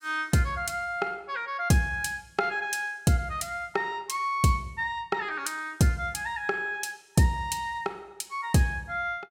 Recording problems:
none

